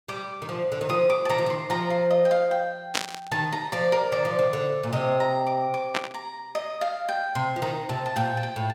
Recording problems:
static burst; at 3 s and at 6 s; peak +3 dB vs average level

